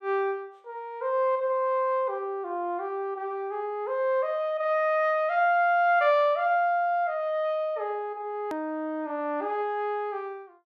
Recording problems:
edit click; at 8.5 s

